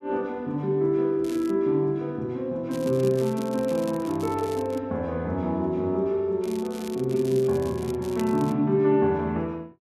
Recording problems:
crackle; at 1 s, from 2.5 to 5 s and from 6.5 to 8.5 s; loose cable, SNR 20 dB

